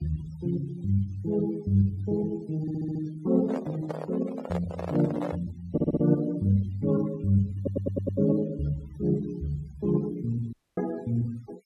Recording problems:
denoising artefacts; signal-to-artefact ratio 24 dB
audio stuttering; at 2.5 s, at 5.5 s and at 7.5 s
microphone handling noise; from 3.5 to 5.5 s; peak -2 dB vs average level
dropout; at 11 s

